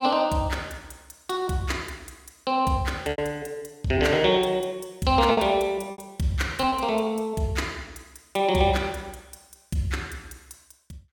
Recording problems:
packet loss; 3% of the sound replaced, filled with repeated pitch periods

